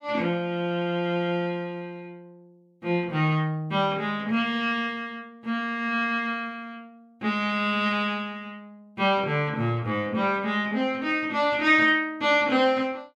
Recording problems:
none

